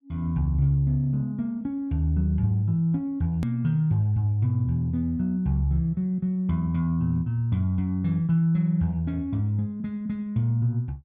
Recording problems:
hard cut with a click; at 3.5 s

